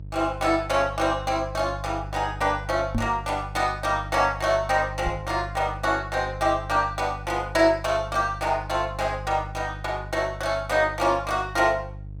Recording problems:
hum; 50 Hz, harmonics up to 350 Hz, SNR 12 dB
microphone bump; at 3 s and at 5 s; peak +1 dB vs average level

